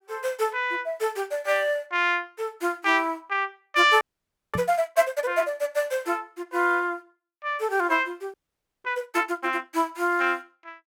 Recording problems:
audio freezing; at 4 s for 0.5 s and at 8.5 s for 0.5 s
microphone bump; at 4.5 s; peak -2 dB vs average level

